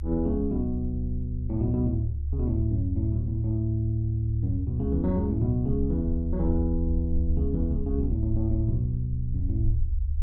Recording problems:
low-frequency rumble; below 74 Hz, strongest tone 72 Hz, SNR 3 dB

